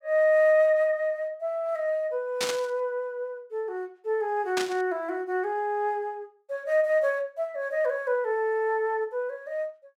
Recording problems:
static burst; at 2.5 s and at 4.5 s; peak +2 dB vs average level

